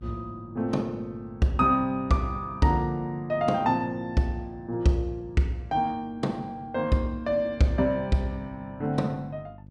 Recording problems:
electrical hum; 50 Hz, harmonics up to 350 Hz, SNR 21 dB

